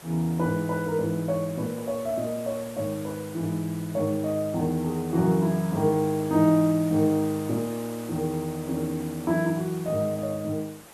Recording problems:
background hiss; slope -4 dB per octave, SNR 17 dB

